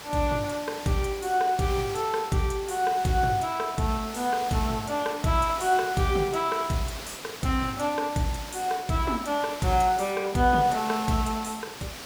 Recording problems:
background hiss; slope -2 dB per octave, SNR 12 dB

